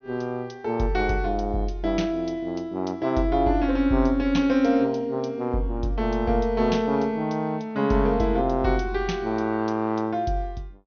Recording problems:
low-pass filter; nothing above 6.3 kHz

